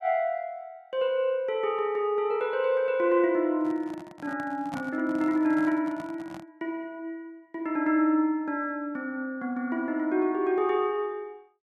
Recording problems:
handling noise; from 3.5 to 6.5 s; peak -7 dB vs average level

